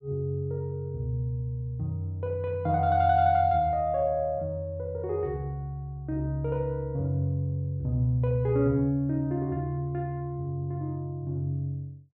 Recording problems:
none

